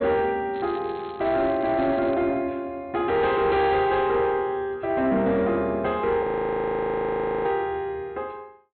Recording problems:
low-pass filter; nothing above 4.2 kHz
distorted audio; soft clipping, signal-to-distortion ratio 11 dB
crackle; from 0.5 to 2 s; loose cable, SNR 23 dB
audio freezing; at 6 s for 1 s

